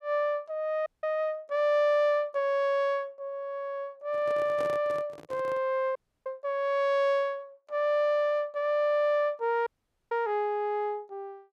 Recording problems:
dropout; at 1 s, at 6 s and at 9.5 s
microphone handling noise; from 4 to 5.5 s; peak -7 dB vs average level

